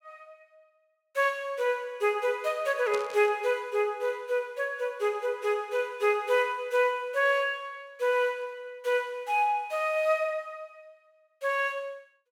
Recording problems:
burst of static; at 3 s; peak -7 dB vs average level

